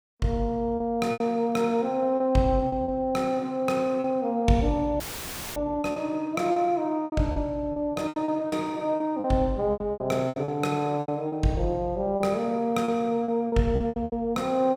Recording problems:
lost packets; 11% of the sound replaced, filled with repeated pitch periods
audio cutting out; at 5 s for 0.5 s; filled with static

